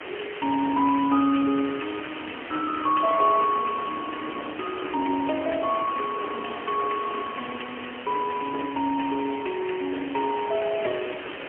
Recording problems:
phone line; 240 Hz to 3.2 kHz, AMR-NB, then MP3
background hiss; SNR 12 dB
wind noise; below 1.2 kHz, SNR 15 dB

